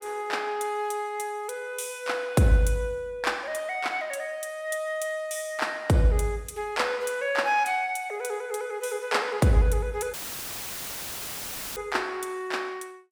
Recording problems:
dropout; at 10 s for 1.5 s; filled with static

